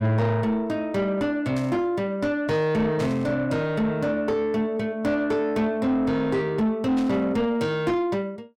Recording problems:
distortion; soft clipping, signal-to-distortion ratio 10 dB
static burst; at 1.5 s, at 3 s and at 7 s; peak -11 dB vs average level

